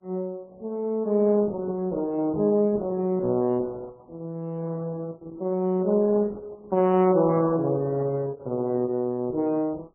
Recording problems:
lossy codec; Opus, then MP3, log-spectral distance 2 dB

